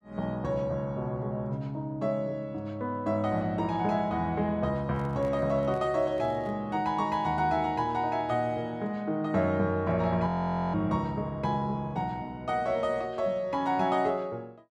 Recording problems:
microphone handling noise; from 5 to 6.5 s; peak -11 dB vs average level
frozen audio; at 10 s

